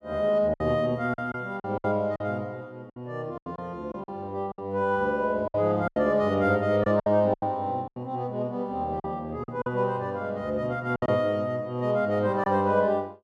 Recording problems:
packet loss; 9% of the sound replaced, filled with silence

